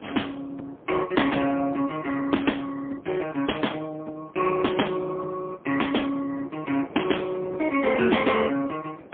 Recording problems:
telephone audio; 240 Hz to 3.4 kHz, AMR-NB, then MP3
wind noise; below 650 Hz, SNR 21 dB

